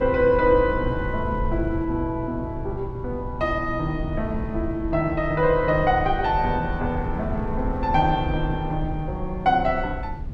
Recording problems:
wind on the microphone; below 110 Hz, SNR 8 dB

